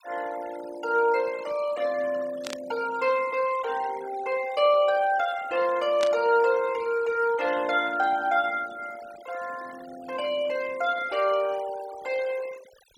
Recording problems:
denoising artefacts; signal-to-artefact ratio 19 dB
burst of static; at 2.5 s and at 6 s; peak -3 dB vs average level

